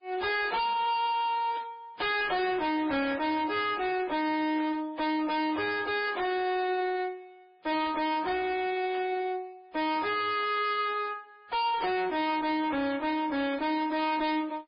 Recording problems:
codec artefacts; MP3, then MP3, log-spectral distance 3 dB, nothing above 4.8 kHz
distortion; hard clipping, signal-to-distortion ratio 6 dB
burst of static; at 1.5 s, at 4.5 s and at 9 s; peak -12 dB vs average level

